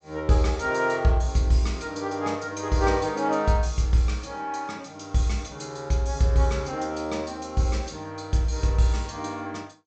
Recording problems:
treble missing; nothing above 8 kHz

